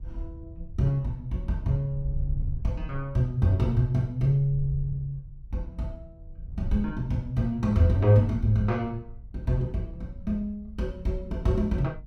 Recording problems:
wind noise; below 76 Hz, SNR 13 dB

